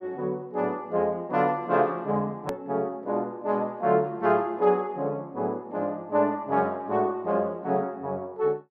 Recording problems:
click at an edit; at 2.5 s

